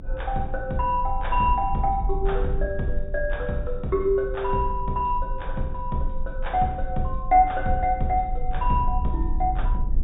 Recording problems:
treble missing; nothing above 4 kHz
low-frequency rumble; below 48 Hz, strongest tone 20 Hz, SNR 6 dB

